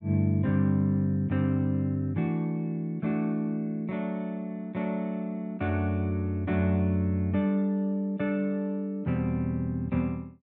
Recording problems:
none

